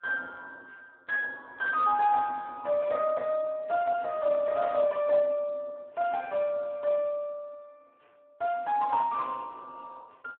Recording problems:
phone line; 280 Hz to 2.8 kHz, Speex

